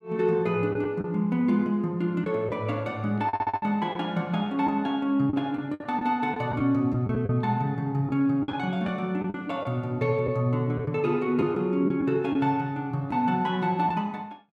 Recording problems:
packet loss; 5% of the sound replaced, filled with the last packet
audio stuttering; at 3.5 s

